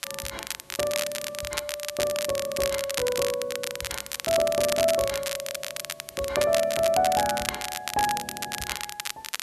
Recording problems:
background hiss; slope -2 dB per octave, SNR 27 dB
crackling; vinyl, SNR 4 dB

